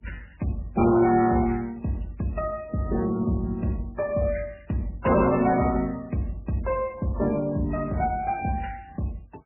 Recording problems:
lossy codec; MP3, then MP3, log-spectral distance 4 dB, nothing above 2.4 kHz
distorted audio; hard clipping, uneven, signal-to-distortion ratio 10 dB

